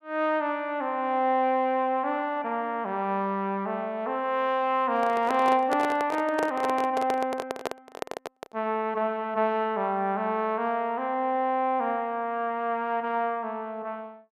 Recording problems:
handling noise; from 5 to 8.5 s; peak +1 dB vs average level

